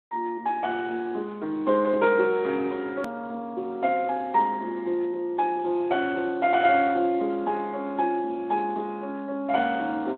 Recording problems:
telephone audio; 220 Hz to 3.7 kHz, Speex
click at an edit; at 3 s

